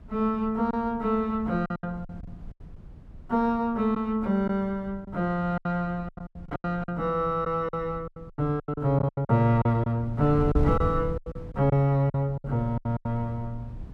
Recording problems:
wind on the microphone; below 140 Hz, SNR 13 dB
lost packets; 13% of the sound replaced, filled with silence

